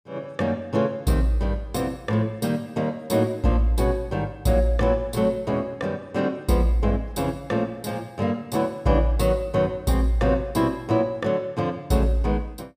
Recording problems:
none

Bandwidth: 15 kHz